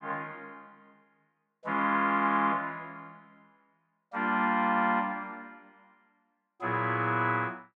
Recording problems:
none

